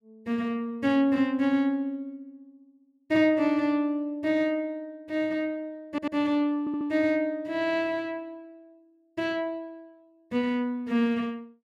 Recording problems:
stutter; at 6 s and at 6.5 s

